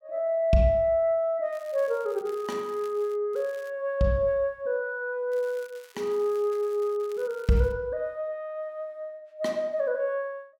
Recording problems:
crackling; from 1.5 to 3 s, at 3.5 s and from 5.5 to 7.5 s; loose cable, SNR 26 dB

